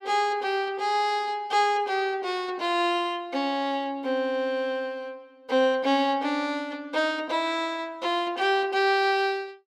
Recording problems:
none

